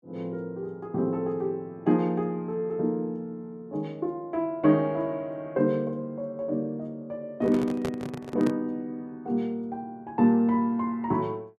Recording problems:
handling noise; from 7.5 to 8.5 s; peak +1 dB vs average level

